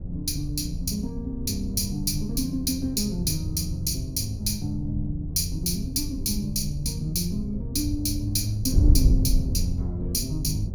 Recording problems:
wind noise; below 98 Hz, SNR 3 dB

